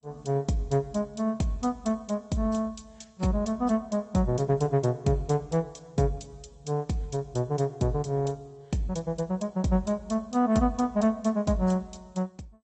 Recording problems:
lossy codec; MP2, then AAC, log-spectral distance 3 dB, nothing above 8 kHz

